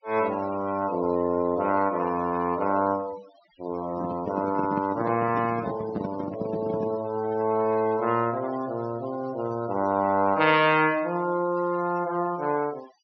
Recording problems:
treble missing; nothing above 6 kHz
denoising artefacts; signal-to-artefact ratio 19 dB
microphone handling noise; from 4 to 7 s; peak -1 dB vs average level

